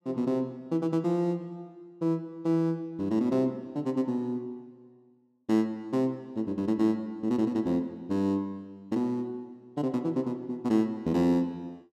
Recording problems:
none

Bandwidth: 14 kHz